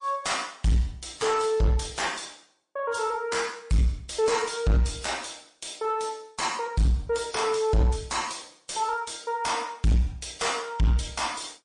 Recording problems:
codec artefacts; MP3, then MP3, log-spectral distance 6 dB, nothing above 8.2 kHz
distortion; soft clipping, signal-to-distortion ratio 8 dB

